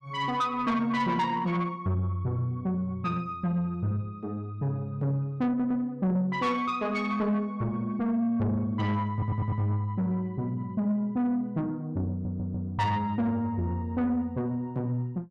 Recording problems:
distortion; soft clipping, signal-to-distortion ratio 12 dB
stutter; at 5.5 s, at 9 s and at 12 s

